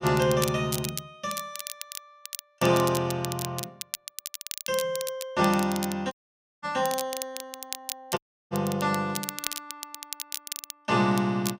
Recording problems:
crackling; vinyl, SNR 8 dB
dropout; at 6 s for 0.5 s and at 8 s

